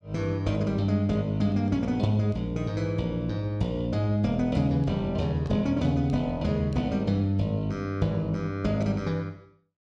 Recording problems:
none

